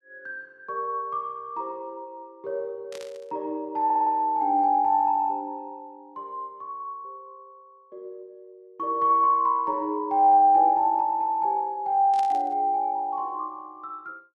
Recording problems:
burst of static; at 3 s and at 12 s; peak -14 dB vs average level
stutter; at 4 s

